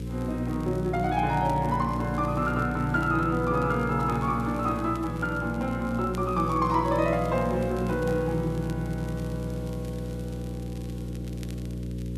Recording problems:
mains hum; 60 Hz, harmonics up to 540 Hz, SNR 6 dB
hiss; slope -1 dB per octave, SNR 27 dB
crackle; vinyl, SNR 25 dB

